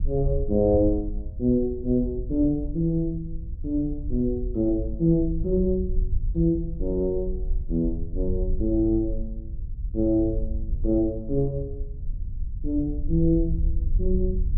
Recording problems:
low-frequency rumble; below 62 Hz, SNR 7 dB

